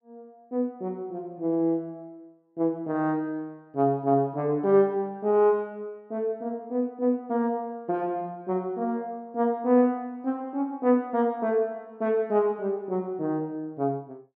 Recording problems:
none

